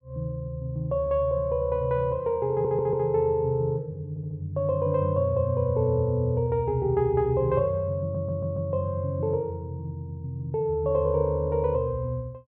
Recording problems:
audio stuttering; at 2.5 s, at 4 s and at 8 s

